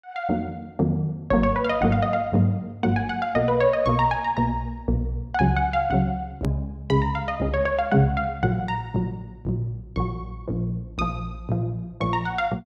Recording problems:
click at an edit; at 6.5 s

